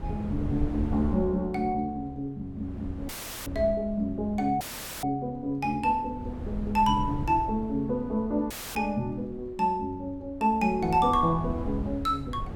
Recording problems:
wind noise; below 140 Hz, SNR 10 dB
audio cutting out; at 3 s, at 4.5 s and at 8.5 s

